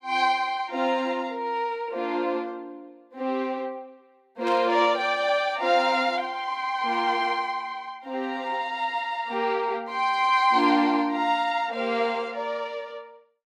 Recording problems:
static burst; at 4.5 s; peak -8 dB vs average level

